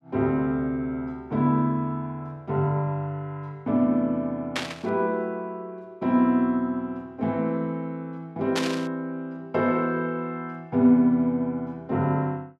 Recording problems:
burst of static; at 4.5 s and at 8.5 s; peak +2 dB vs average level

